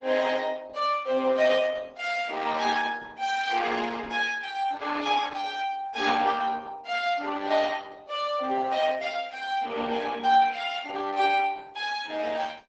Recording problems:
lossy compression; Opus, log-spectral distance 5 dB, nothing above 7.8 kHz

